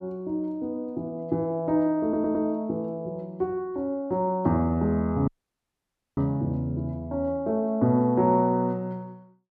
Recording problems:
stutter; at 2 s
dropout; at 5.5 s for 1 s

